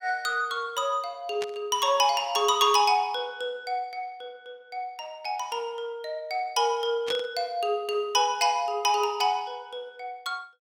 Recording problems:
static burst; at 1.5 s and at 7 s; peak -4 dB vs average level

